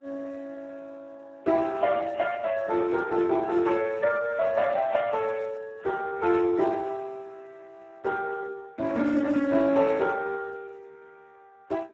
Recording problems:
lossy codec; MP3, then Speex, log-spectral distance 4 dB, nothing above 7.6 kHz

